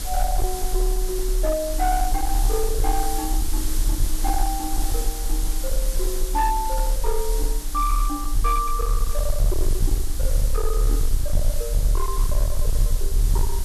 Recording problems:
distortion; hard clipping, signal-to-distortion ratio 8 dB
hiss; SNR 4 dB
low-frequency rumble; below 38 Hz, strongest tone 36 Hz, SNR -2 dB

